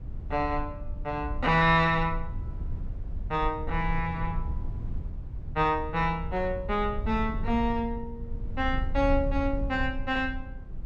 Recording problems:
rumble; below 78 Hz, SNR 8 dB

